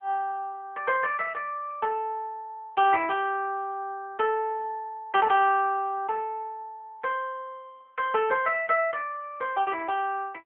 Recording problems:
telephone audio; 340 Hz to 3.3 kHz, AMR-NB

